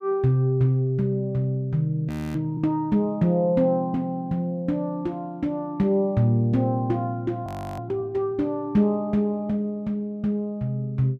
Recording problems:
frozen audio; at 2 s and at 7.5 s

